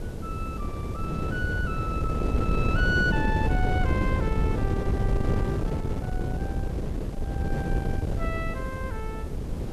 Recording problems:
hiss; slope -1 dB per octave, SNR 22 dB
wind on the microphone; below 230 Hz, SNR -5 dB

